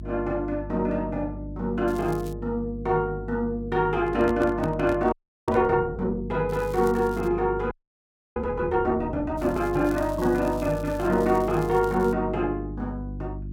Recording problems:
mains hum; 50 Hz, harmonics up to 350 Hz, SNR 12 dB
crackling; at 2 s, at 6.5 s and from 9.5 to 12 s; loose cable, SNR 22 dB
microphone handling noise; from 4 to 5.5 s; peak -3 dB vs average level
frozen audio; at 5 s and at 7.5 s for 0.5 s

